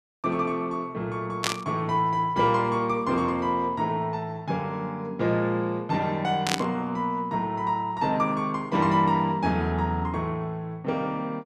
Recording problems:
burst of static; at 1.5 s and at 6.5 s; peak +4 dB vs average level

